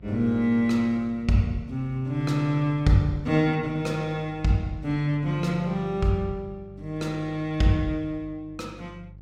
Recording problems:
hum; 50 Hz, harmonics up to 400 Hz, SNR 21 dB

